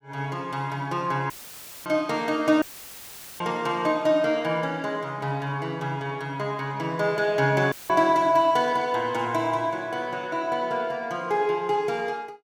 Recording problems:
dropout; at 1.5 s for 0.5 s, at 2.5 s for 1 s and at 7.5 s; filled with static

